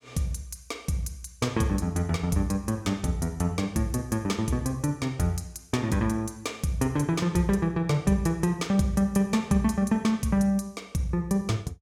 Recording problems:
none

